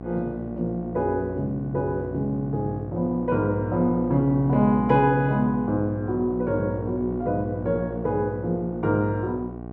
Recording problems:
hum; 60 Hz, harmonics up to 1.2 kHz, SNR 10 dB

